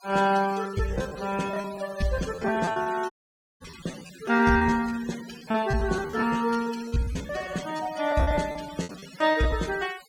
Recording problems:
noise reduction artefacts; signal-to-artefact ratio 16 dB
packet loss; 16% of the sound replaced, filled with repeated pitch periods
dropout; at 3 s for 0.5 s

